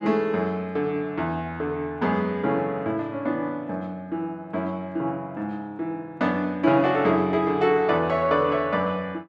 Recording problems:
none

